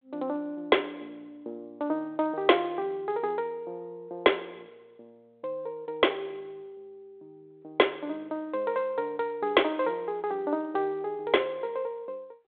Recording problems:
phone line; 240 Hz to 3.6 kHz, G.726

